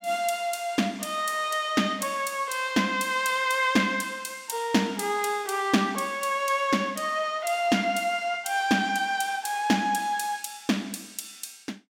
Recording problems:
none

